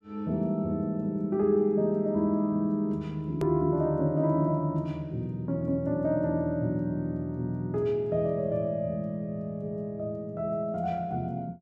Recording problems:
edit click; at 3.5 s

